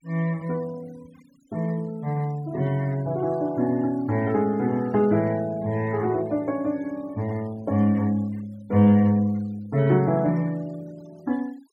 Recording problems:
noise reduction artefacts; signal-to-artefact ratio 28 dB

